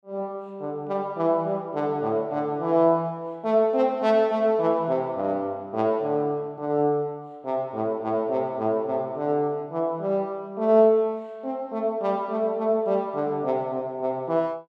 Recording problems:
none

